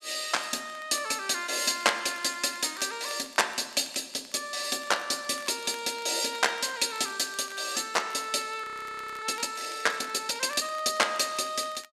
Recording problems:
crackle; vinyl, SNR 22 dB
audio freezing; at 8.5 s for 0.5 s

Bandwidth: 14.5 kHz